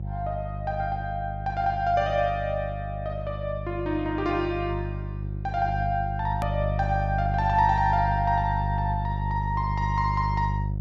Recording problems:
low-pass filter; nothing above 8 kHz
hum; 50 Hz, harmonics up to 400 Hz, SNR 4 dB
click at an edit; at 6.5 s

